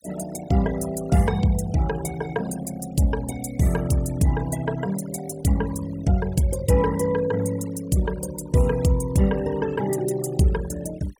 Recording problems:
noise reduction artefacts; signal-to-artefact ratio 18 dB

